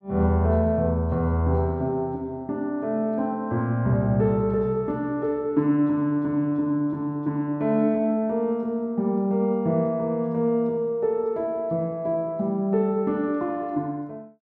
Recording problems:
none

